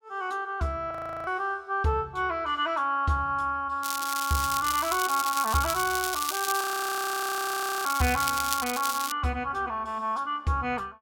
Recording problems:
frozen audio; at 1 s and at 6.5 s for 1 s
crackling; from 4 to 9 s; loose cable, SNR 4 dB

